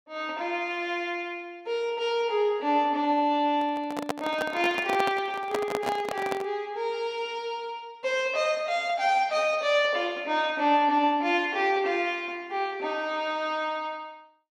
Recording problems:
microphone handling noise; from 3.5 to 6.5 s; peak +2 dB vs average level

